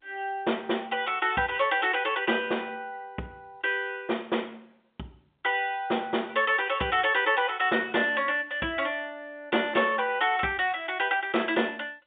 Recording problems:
phone line; 190 Hz to 3.6 kHz, G.711

